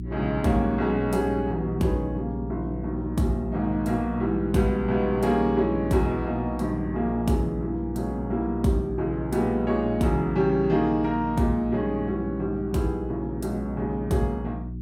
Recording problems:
hum; 60 Hz, harmonics up to 360 Hz, SNR 9 dB

